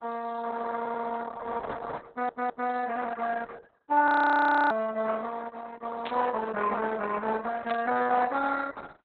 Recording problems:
codec artefacts; Opus, then Opus, log-spectral distance 5 dB, nothing above 13.1 kHz
audio stuttering; at 1 s and at 2 s
burst of static; at 4 s, at 6 s and at 7.5 s; peak -4 dB vs average level
audio freezing; at 4 s for 0.5 s

